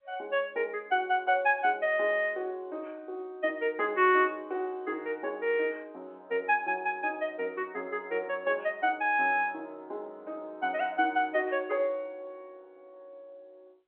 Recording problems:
phone line; 320 Hz to 3.3 kHz, G.711

